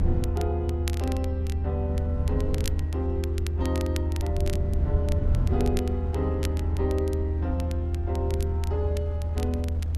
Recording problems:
rumble; below 80 Hz, strongest tone 78 Hz, SNR -5 dB
wind noise; below 270 Hz, SNR 17 dB
crackle; vinyl, SNR 12 dB

